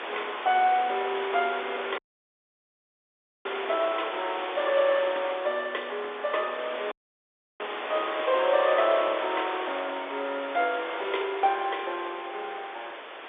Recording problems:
phone line; 340 Hz to 3.7 kHz, G.711
wind on the microphone; below 2.7 kHz, SNR 7 dB
dropout; at 2 s for 1.5 s and at 7 s for 0.5 s
crackling; from 9.5 to 12 s; loose cable, SNR 26 dB

